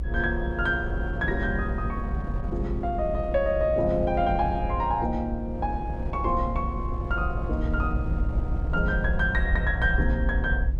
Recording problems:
low-frequency rumble; below 64 Hz, SNR 3 dB
wind noise; below 260 Hz, SNR 10 dB

